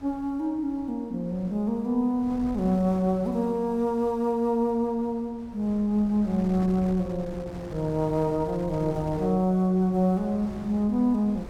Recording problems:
wind on the microphone; below 390 Hz, SNR 17 dB

